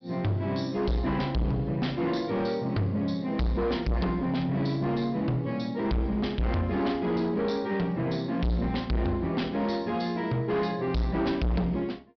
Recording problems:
treble missing; nothing above 5.5 kHz
distorted audio; soft clipping, signal-to-distortion ratio 6 dB

